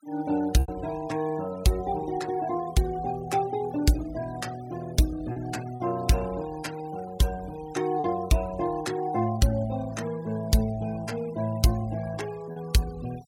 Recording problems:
denoising artefacts; signal-to-artefact ratio 18 dB
packet loss; 1.8% of the sound replaced, filled with repeated pitch periods

